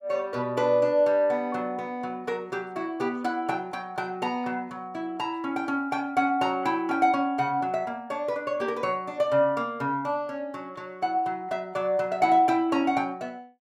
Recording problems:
none

